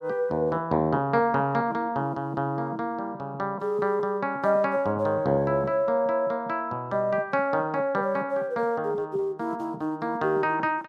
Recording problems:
none

